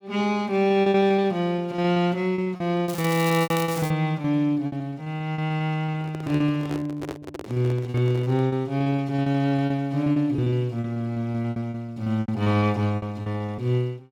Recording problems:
lost packets; 16% of the sound replaced, filled with repeated pitch periods
crackle; from 3 to 4 s; loose cable, SNR 12 dB
handling noise; from 6 to 8.5 s; peak -5 dB vs average level

